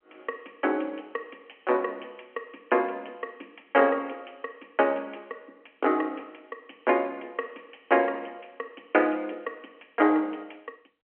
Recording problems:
telephone audio; 240 Hz to 3.2 kHz, G.711

